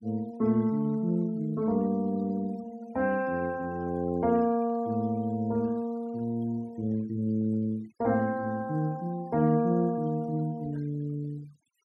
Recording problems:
denoising artefacts; signal-to-artefact ratio 26 dB

